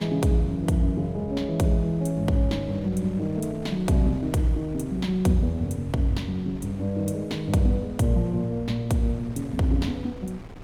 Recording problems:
wind on the microphone; below 400 Hz, SNR 18 dB

